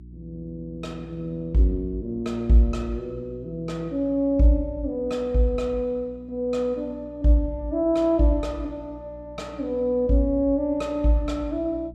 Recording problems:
electrical hum; 60 Hz, harmonics up to 360 Hz, SNR 20 dB

